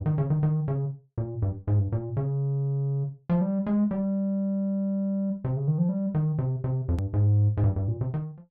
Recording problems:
hard cut with a click; at 7 s

